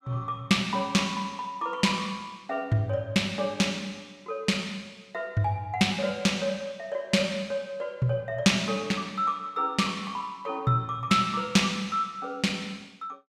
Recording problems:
none

